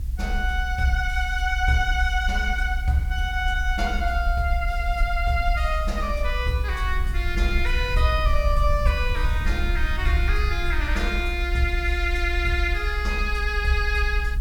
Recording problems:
background hiss; slope 0 dB per octave, SNR 25 dB
low-frequency rumble; below 62 Hz, SNR 2 dB

